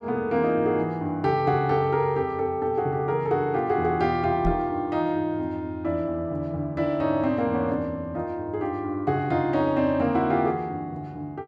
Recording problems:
knock on the microphone; at 4.5 s; peak 0 dB vs average level

